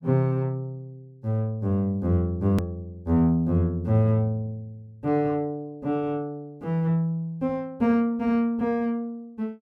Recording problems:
edit click; at 2.5 s

